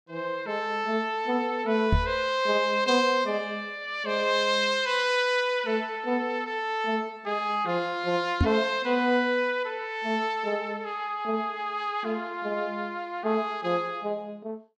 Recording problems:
microphone thump; at 2 s and at 8.5 s; peak +7 dB vs average level

